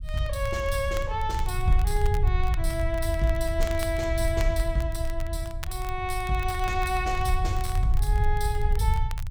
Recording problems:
low-frequency rumble; below 74 Hz, SNR 0 dB
crackling; vinyl, SNR 17 dB

